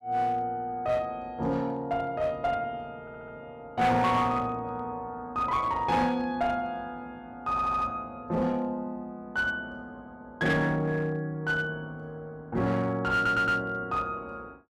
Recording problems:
distortion; hard clipping, uneven, signal-to-distortion ratio 11 dB
stutter; at 3 s, at 7.5 s and at 13 s

